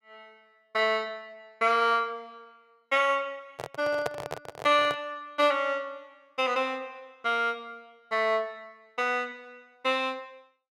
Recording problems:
handling noise; from 3.5 to 5 s; peak 0 dB vs average level

